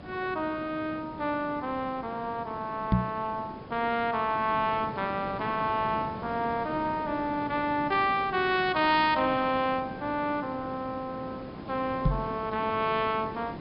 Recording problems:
low-pass filter; nothing above 5.5 kHz
hiss; slope -8 dB per octave, SNR 12 dB
knock on the microphone; at 3 s and at 12 s; peak +9 dB vs average level

